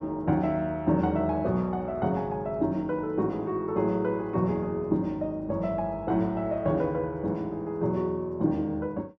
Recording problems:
none

